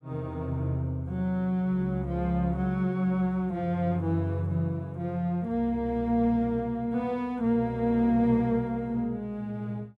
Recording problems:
none

